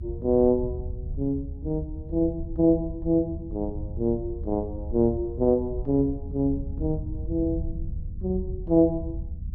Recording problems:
low-frequency rumble; below 90 Hz, SNR 9 dB

